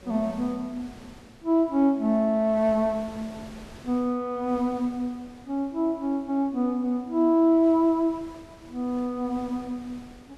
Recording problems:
wind on the microphone; below 1.6 kHz, SNR 23 dB

